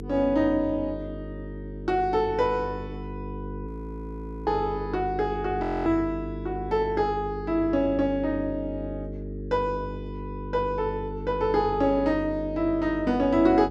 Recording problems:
hum; 50 Hz, harmonics up to 450 Hz, SNR 10 dB
audio freezing; at 3.5 s for 1 s and at 5.5 s

